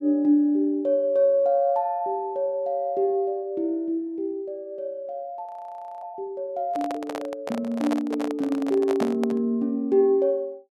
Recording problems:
audio freezing; at 5.5 s for 0.5 s
handling noise; from 6.5 to 9.5 s; peak -1 dB vs average level

